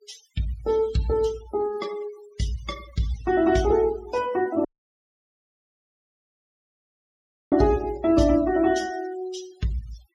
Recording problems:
noise reduction artefacts; signal-to-artefact ratio 18 dB
audio cutting out; at 4.5 s for 3 s

